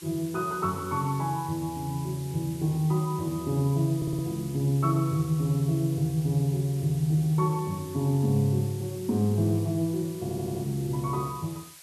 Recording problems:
hiss; slope +3 dB per octave, SNR 18 dB
audio stuttering; at 4 s and at 10 s

